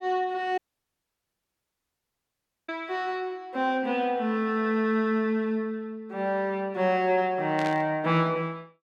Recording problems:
dropout; at 0.5 s for 2 s
static burst; at 7.5 s; peak -6 dB vs average level

